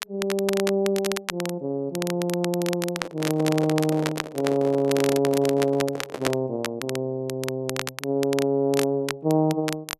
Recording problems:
crackle; vinyl, SNR 9 dB
microphone handling noise; from 3 to 6.5 s; peak -1 dB vs average level

